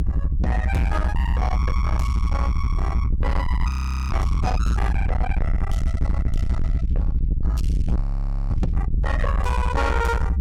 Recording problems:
distortion; soft clipping, signal-to-distortion ratio 6 dB
rumble; below 80 Hz, SNR -3 dB
frozen audio; at 3.5 s and at 8 s for 0.5 s

